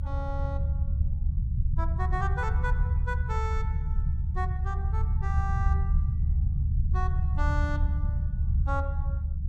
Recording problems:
low-frequency rumble; below 84 Hz, SNR -8 dB

